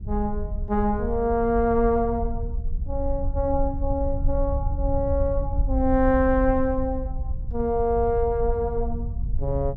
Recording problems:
rumble; below 70 Hz, SNR 5 dB

